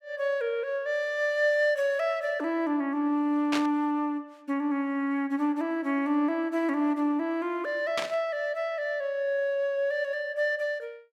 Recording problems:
static burst; at 3.5 s and at 8 s; peak +1 dB vs average level

